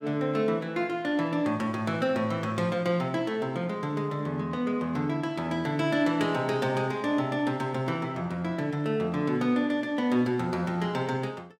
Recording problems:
none

